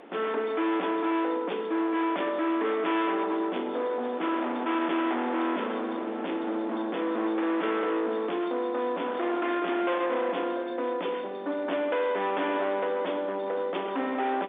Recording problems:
telephone audio; 280 Hz to 3.6 kHz, G.711
distortion; hard clipping, signal-to-distortion ratio 6 dB
wind noise; below 1.3 kHz, SNR 15 dB

